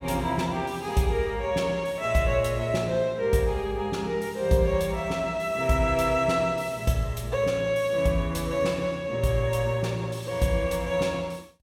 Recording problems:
none

